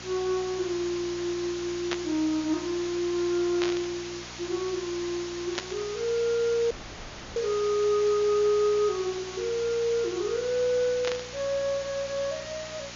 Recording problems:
treble missing; nothing above 7 kHz
electrical hum; 60 Hz, harmonics up to 960 Hz, SNR 21 dB
hiss; slope 0 dB per octave, SNR 11 dB
burst of static; 4 times, first at 2 s; peak +1 dB vs average level
audio cutting out; at 6.5 s for 0.5 s

